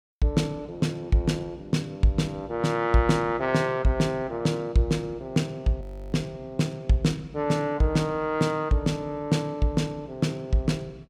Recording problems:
frozen audio; at 6 s

